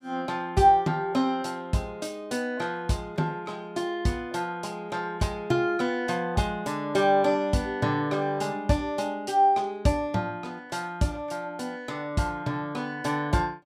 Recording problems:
none

